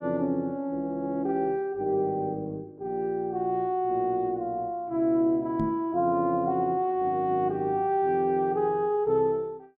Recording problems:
microphone thump; at 5.5 s; peak 0 dB vs average level

